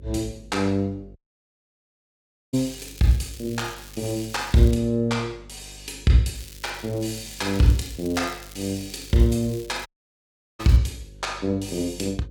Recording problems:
hum; 50 Hz, harmonics up to 550 Hz, SNR 22 dB
audio cutting out; at 1 s for 1.5 s and at 10 s for 0.5 s
crackle; from 2.5 to 4.5 s and from 6.5 to 11 s; loose cable, SNR 19 dB

